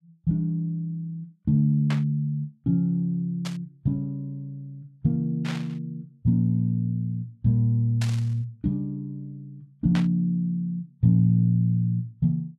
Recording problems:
static burst; 5 times, first at 2 s; peak -5 dB vs average level

